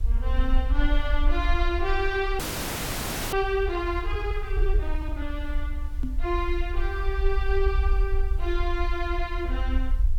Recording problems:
background hiss; slope -4 dB per octave, SNR 25 dB
rumble; below 54 Hz, SNR -1 dB
audio freezing; at 2.5 s for 1 s
knock on the microphone; at 6 s; peak 0 dB vs average level

